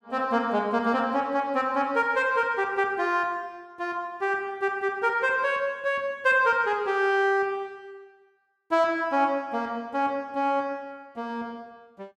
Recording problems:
none

